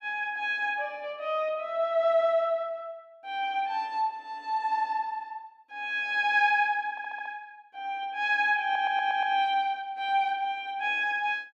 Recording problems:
stutter; at 7 s and at 8.5 s

